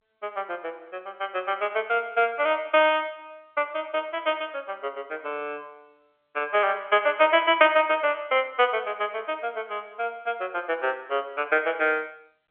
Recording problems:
telephone audio; 320 Hz to 3.3 kHz, G.711

